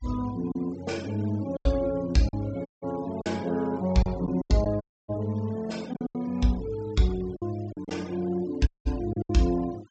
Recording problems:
treble cut off; nothing above 8 kHz
noise reduction artefacts; signal-to-artefact ratio 21 dB
packet loss; 7% of the sound replaced, filled with silence
dropout; at 2.5 s, at 5 s and at 8.5 s

